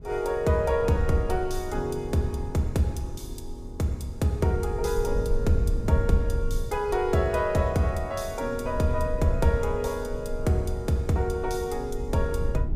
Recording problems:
rumble; below 68 Hz, SNR 8 dB

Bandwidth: 15.5 kHz